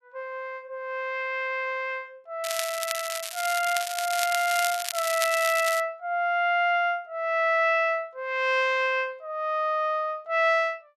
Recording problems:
crackle; from 2.5 to 6 s; loose cable, SNR 6 dB

